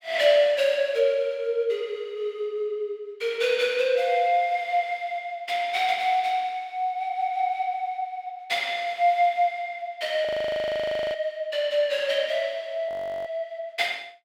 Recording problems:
audio freezing; at 10 s for 1 s and at 13 s

